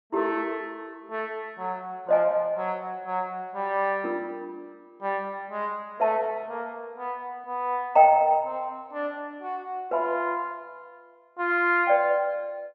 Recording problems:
low-pass filter; nothing above 8 kHz

